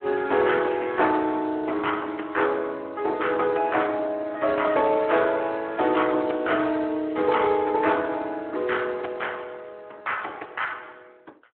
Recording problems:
telephone audio; 260 Hz to 3.3 kHz, Speex

